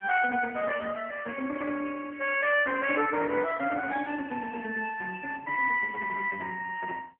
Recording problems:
phone line; 240 Hz to 2.9 kHz, AMR-NB

